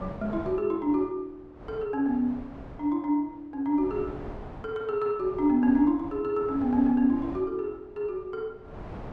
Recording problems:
wind on the microphone; below 630 Hz, SNR 17 dB

